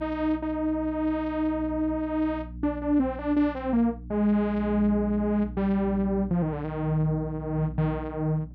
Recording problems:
hum; 60 Hz, harmonics up to 300 Hz, SNR 14 dB

